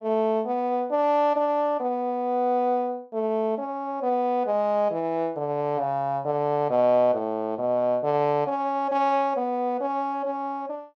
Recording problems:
none

